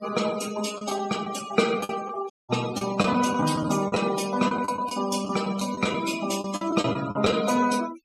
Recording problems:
denoising artefacts; signal-to-artefact ratio 13 dB
lost packets; 9% of the sound replaced, filled with the last packet
dropout; at 2.5 s

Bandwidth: 14.5 kHz